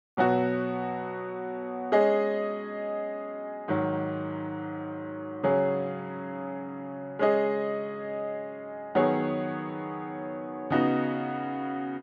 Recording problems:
none

